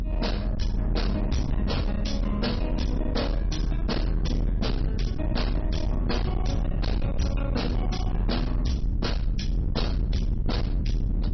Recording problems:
codec artefacts; MP3, log-spectral distance 3 dB, nothing above 5.8 kHz
distortion; hard clipping, signal-to-distortion ratio 7 dB
rumble; below 120 Hz, strongest tone 42 Hz, SNR -2 dB

